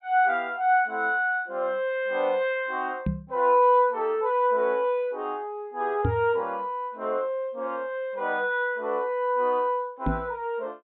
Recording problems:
treble cut off; nothing above 4 kHz
microphone bump; at 3 s, at 6 s and at 10 s; peak +3 dB vs average level

